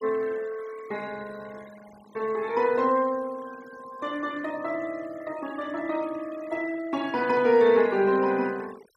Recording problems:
denoising artefacts; signal-to-artefact ratio 22 dB

